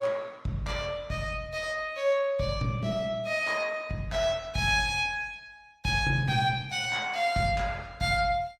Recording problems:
codec artefacts; Opus, log-spectral distance 2 dB, nothing above 18.5 kHz

